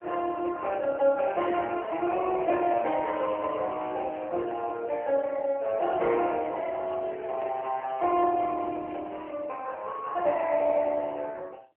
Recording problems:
phone line; 320 Hz to 3.1 kHz, AMR-NB
crackle; from 2.5 to 4.5 s and from 6 to 9.5 s; loose cable, SNR 26 dB

